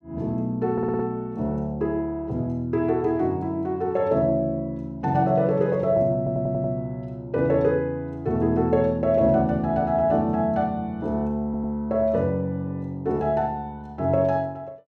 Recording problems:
audio stuttering; at 0.5 s, at 6 s and at 11 s

